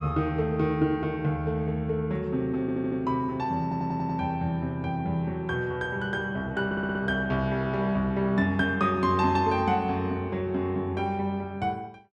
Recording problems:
stutter; at 2.5 s, at 3.5 s and at 6.5 s

